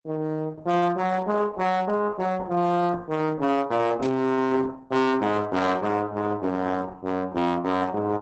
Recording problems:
codec artefacts; Opus, log-spectral distance 2 dB, nothing above 8 kHz
distortion; hard clipping, uneven, signal-to-distortion ratio 10 dB
static burst; at 4 s; peak -12 dB vs average level

